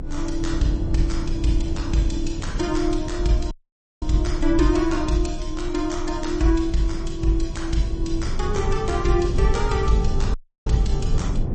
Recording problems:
codec artefacts; MP3, log-spectral distance 2 dB, nothing above 8.2 kHz
low-frequency rumble; below 88 Hz, strongest tone 24 Hz, SNR 4 dB
audio cutting out; at 3.5 s for 0.5 s and at 10 s

